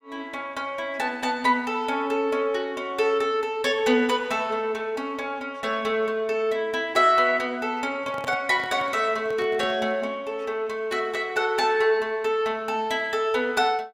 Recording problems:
handling noise; from 8 to 10 s; peak -8 dB vs average level

